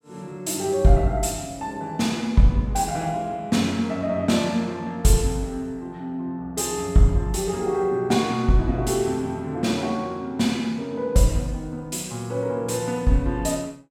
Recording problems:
none

